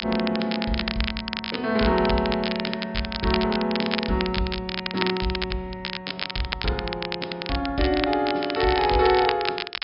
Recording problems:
treble cut off; nothing above 5.5 kHz
crackling; vinyl, SNR 5 dB

